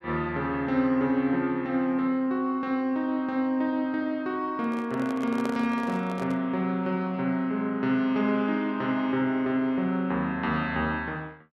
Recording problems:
handling noise; from 4.5 to 6.5 s; peak -3 dB vs average level

